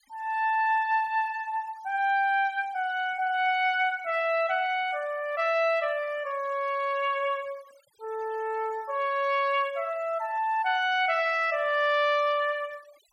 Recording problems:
noise reduction artefacts; signal-to-artefact ratio 27 dB

